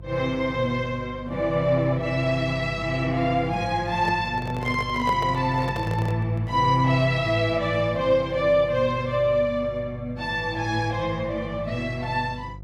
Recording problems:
hum; 50 Hz, harmonics up to 700 Hz, SNR 16 dB
microphone handling noise; from 4 to 6.5 s; peak -3 dB vs average level

